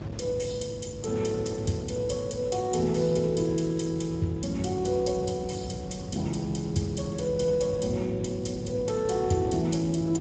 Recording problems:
lossy compression; Speex, log-spectral distance 5 dB, nothing above 7.6 kHz
hum; 50 Hz, harmonics up to 500 Hz, SNR 17 dB
rumble; below 180 Hz, SNR 15 dB
wind on the microphone; below 610 Hz, SNR 19 dB

